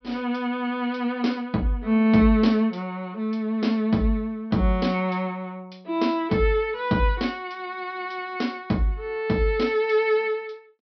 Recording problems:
low-pass filter; nothing above 5.5 kHz

